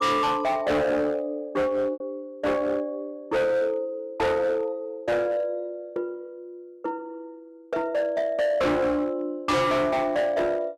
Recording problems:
distortion; hard clipping, signal-to-distortion ratio 6 dB
lost packets; 0.8% of the sound replaced, filled with repeated pitch periods

